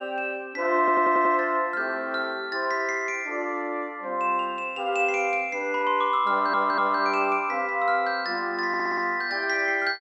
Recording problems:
stutter; at 1 s, at 6.5 s and at 8.5 s

